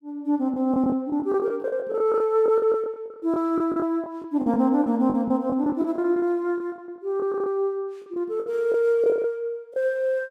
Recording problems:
lost packets; 14% of the sound replaced, filled with the last packet

